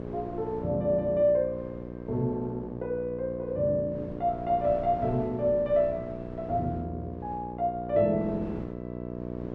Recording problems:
hum; 60 Hz, harmonics up to 1.2 kHz, SNR 10 dB
wind noise; below 450 Hz, SNR 19 dB

